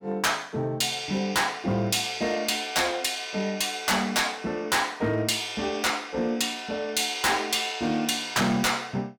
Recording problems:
distortion; hard clipping, signal-to-distortion ratio 6 dB

